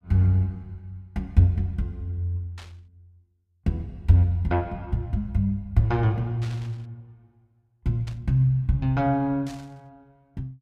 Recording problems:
burst of static; 4 times, first at 2.5 s; peak -14 dB vs average level

